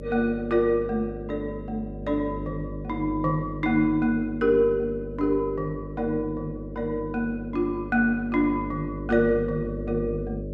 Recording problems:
hum; 50 Hz, harmonics up to 600 Hz, SNR 10 dB

